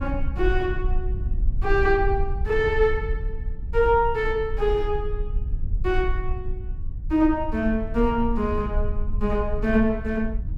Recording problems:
low-frequency rumble; below 58 Hz, SNR 6 dB

